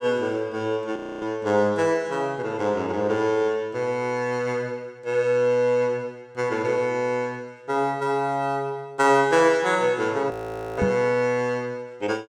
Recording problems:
audio freezing; at 1 s and at 10 s
microphone thump; at 11 s; peak +2 dB vs average level

